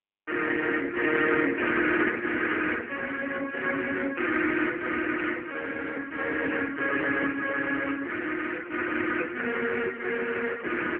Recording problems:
phone line; 240 Hz to 3.1 kHz, AMR-NB

